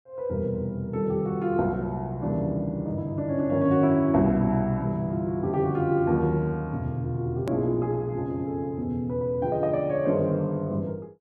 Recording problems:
hard cut with a click; at 7.5 s

